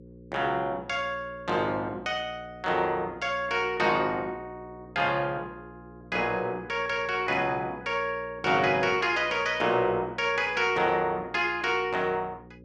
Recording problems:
hum; 60 Hz, harmonics up to 540 Hz, SNR 21 dB

